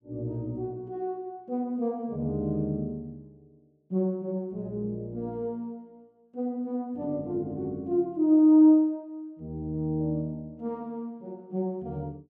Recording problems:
none

